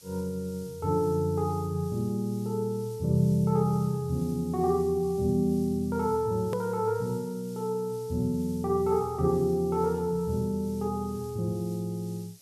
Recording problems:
background hiss; SNR 23 dB
click at an edit; at 6.5 s

